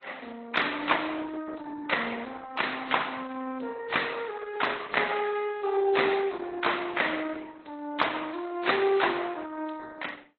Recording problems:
codec artefacts; Opus, then AAC, log-spectral distance 6 dB

